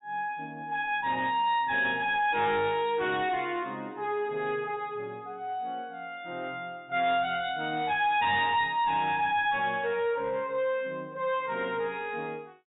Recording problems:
low-pass filter; nothing above 4 kHz
distortion; soft clipping, signal-to-distortion ratio 10 dB

